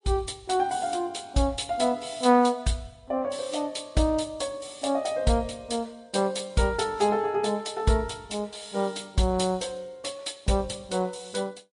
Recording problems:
lossy codec; MP3, log-spectral distance 4 dB, nothing above 10.1 kHz

